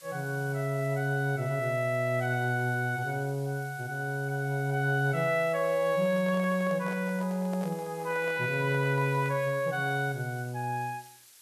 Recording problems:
hiss; slope +3 dB per octave, SNR 22 dB
handling noise; from 6 to 9.5 s; peak -10 dB vs average level

